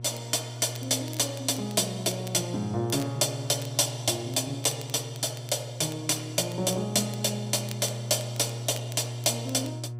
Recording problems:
electrical hum; 60 Hz, harmonics up to 720 Hz, SNR 9 dB
crackle; vinyl, SNR 20 dB

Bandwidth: 15.5 kHz